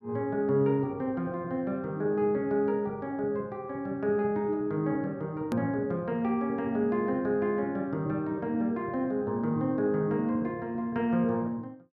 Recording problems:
hard cut with a click; at 5.5 s

